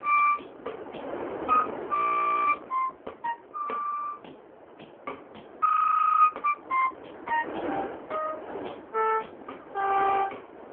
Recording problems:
phone line; 280 Hz to 2.5 kHz, AMR-NB
wind on the microphone; below 880 Hz, SNR 12 dB
audio freezing; at 2 s for 0.5 s and at 5.5 s for 0.5 s

